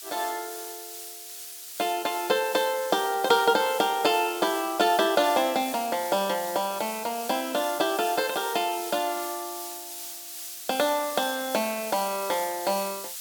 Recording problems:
background hiss; slope +6 dB per octave, SNR 10 dB

